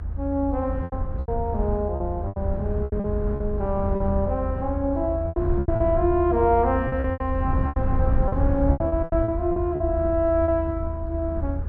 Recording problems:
low-frequency rumble; below 92 Hz, SNR 3 dB
packet loss; 11% of the sound replaced, filled with repeated pitch periods

